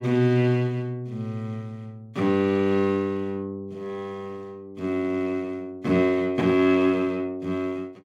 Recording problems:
none

